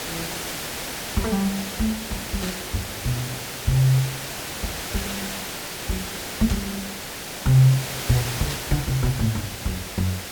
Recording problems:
hiss; slope -2 dB per octave, SNR 5 dB
burst of static; 4 times, first at 2.5 s; peak -6 dB vs average level

